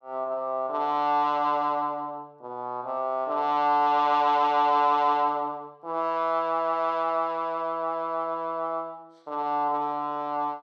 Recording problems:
none

